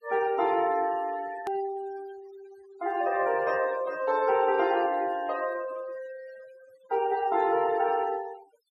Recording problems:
denoising artefacts; signal-to-artefact ratio 19 dB
hard cut with a click; at 1.5 s

